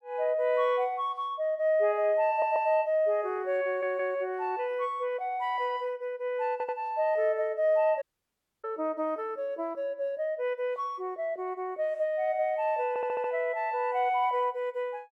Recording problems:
stutter; 4 times, first at 2.5 s
dropout; at 8 s for 0.5 s

